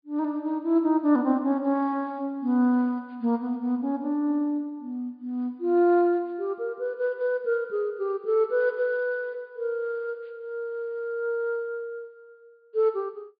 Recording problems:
treble cut off; nothing above 4.8 kHz

